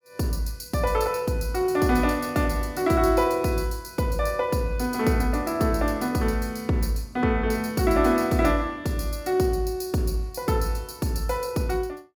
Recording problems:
none

